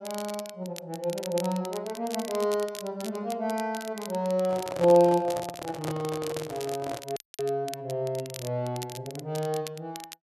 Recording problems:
crackle; vinyl, SNR 14 dB
handling noise; from 4.5 to 7 s; peak 0 dB vs average level
audio cutting out; at 7 s

